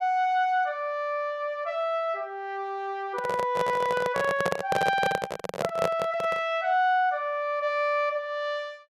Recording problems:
handling noise; from 3 to 6.5 s; peak +3 dB vs average level

